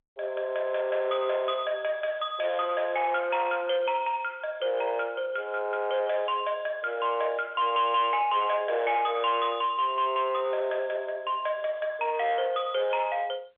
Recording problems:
phone line; 370 Hz to 3.5 kHz, G.711
distortion; soft clipping, signal-to-distortion ratio 11 dB

